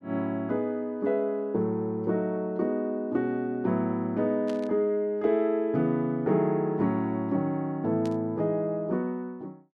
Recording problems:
burst of static; at 4.5 s and at 8 s; peak -13 dB vs average level

